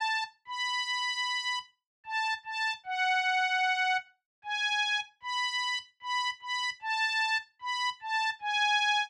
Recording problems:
none

